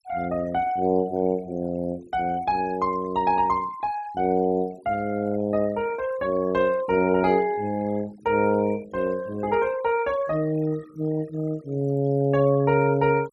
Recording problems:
denoising artefacts; signal-to-artefact ratio 22 dB

